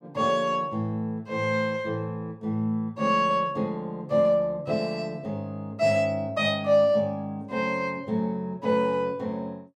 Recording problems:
none

